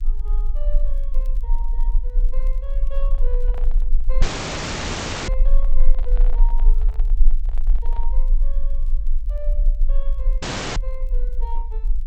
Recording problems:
codec artefacts; G.722, log-spectral distance 2 dB
low-frequency rumble; below 34 Hz, strongest tone 18 Hz, SNR -17 dB
crackling; vinyl, SNR 23 dB
microphone handling noise; from 3 to 8 s; peak +3 dB vs average level
dropout; at 4 s for 1 s and at 10 s

